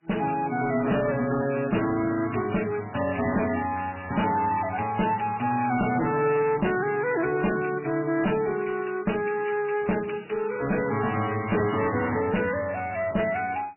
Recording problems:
lossy codec; MP3, log-spectral distance 6 dB, nothing above 2.9 kHz
distorted audio; hard clipping, uneven, signal-to-distortion ratio 6 dB

